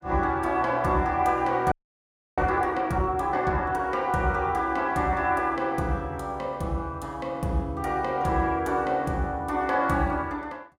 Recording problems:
audio freezing; at 1.5 s for 0.5 s

